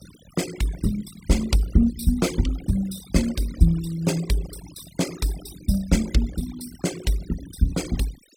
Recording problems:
denoising artefacts; signal-to-artefact ratio 14 dB

